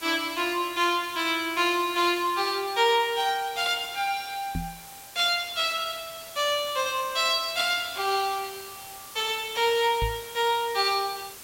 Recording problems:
background hiss; slope -1 dB per octave, SNR 16 dB
knock on the microphone; at 4.5 s and at 10 s; peak -1 dB vs average level

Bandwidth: 16 kHz